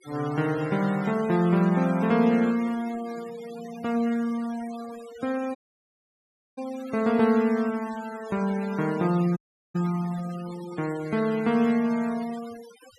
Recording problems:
denoising artefacts; signal-to-artefact ratio 19 dB
dropout; at 5.5 s for 1 s and at 9.5 s

